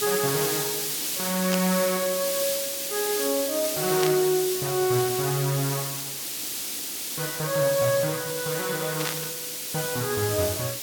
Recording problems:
background hiss; SNR 2 dB
burst of static; at 1.5 s, at 4 s and at 9 s; peak +2 dB vs average level

